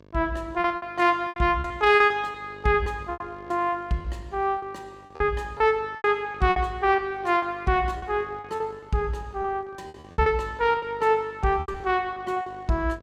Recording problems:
hum; 50 Hz, harmonics up to 2.3 kHz, SNR 25 dB
lost packets; 12% of the sound replaced, filled with repeated pitch periods

